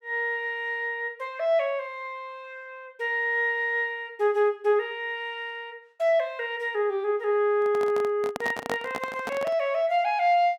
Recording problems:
handling noise; from 7.5 to 9.5 s; peak 0 dB vs average level

